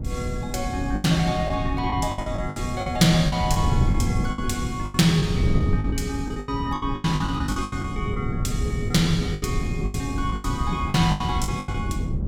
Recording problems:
wind noise; below 170 Hz, SNR 2 dB
packet loss; 14% of the sound replaced, filled with the last packet

